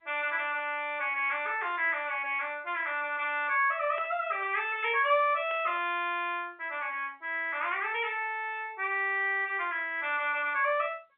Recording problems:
phone line; 340 Hz to 3.4 kHz, G.711
static burst; at 4 s and at 5.5 s; peak -10 dB vs average level

